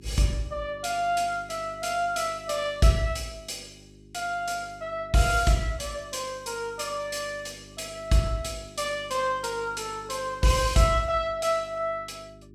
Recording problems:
hum; 50 Hz, harmonics up to 400 Hz, SNR 22 dB

